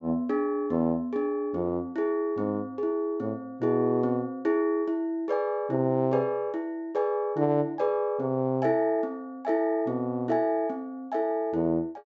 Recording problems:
treble missing; nothing above 8 kHz

